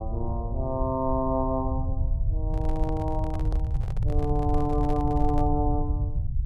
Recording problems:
rumble; below 92 Hz, SNR 1 dB
handling noise; from 2.5 to 5.5 s; peak -8 dB vs average level

